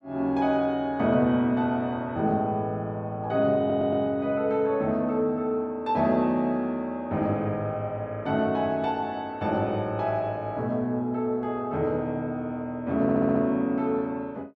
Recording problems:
stutter; at 3.5 s and at 13 s

